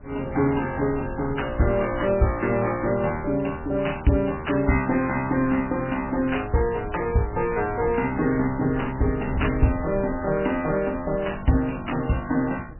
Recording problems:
lossy compression; MP3, log-spectral distance 5 dB, nothing above 2.8 kHz
wind on the microphone; below 140 Hz, SNR 14 dB

